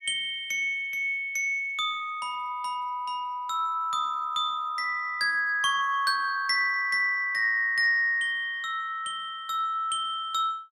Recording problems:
none

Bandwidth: 16 kHz